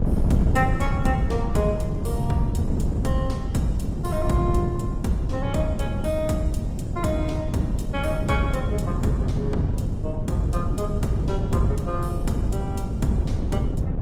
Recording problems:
lossy compression; Opus, log-spectral distance 2 dB
hum; 50 Hz, harmonics up to 350 Hz, SNR 19 dB
wind on the microphone; below 180 Hz, SNR -1 dB

